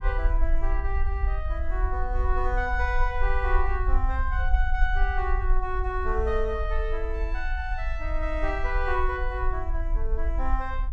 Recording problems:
rumble; below 50 Hz, SNR -1 dB

